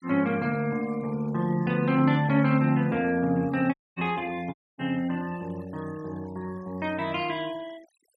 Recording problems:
denoising artefacts; signal-to-artefact ratio 24 dB
audio cutting out; at 3.5 s and at 4.5 s

